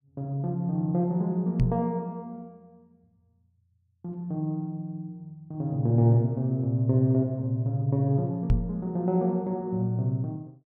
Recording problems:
microphone bump; at 1.5 s and at 8.5 s; peak +7 dB vs average level

